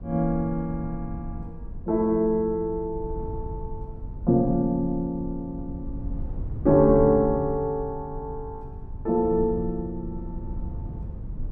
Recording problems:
low-frequency rumble; below 100 Hz, SNR 12 dB

